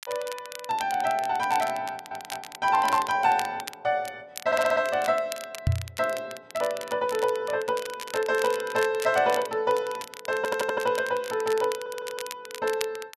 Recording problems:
crackling; vinyl, SNR 13 dB
stutter; 4 times, first at 2 s
microphone bump; at 5.5 s; peak +6 dB vs average level

